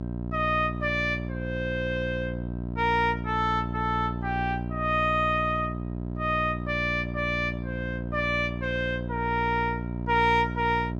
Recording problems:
electrical hum; 60 Hz, harmonics up to 1 kHz, SNR 6 dB

